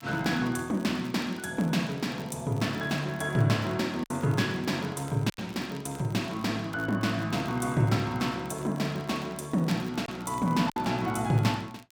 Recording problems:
crackling; vinyl, SNR 24 dB
lost packets; 1.9% of the sound replaced, filled with silence

